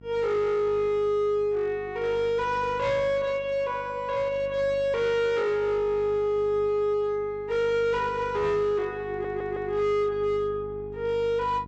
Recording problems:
treble missing; nothing above 8 kHz
distortion; hard clipping, signal-to-distortion ratio 11 dB
electrical hum; 50 Hz, harmonics up to 750 Hz, SNR 20 dB
audio stuttering; at 9 s

